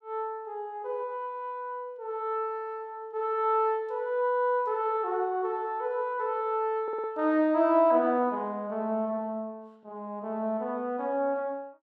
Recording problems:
stutter; at 7 s

